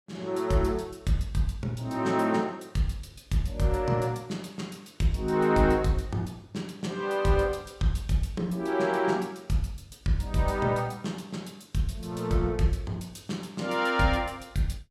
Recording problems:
none

